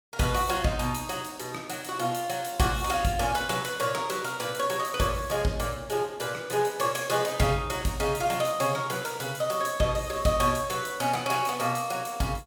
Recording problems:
none

